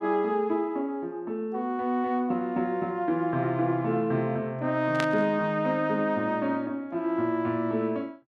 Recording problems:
static burst; at 5 s; peak 0 dB vs average level

